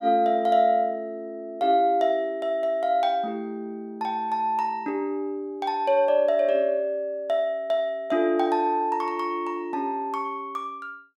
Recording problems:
none

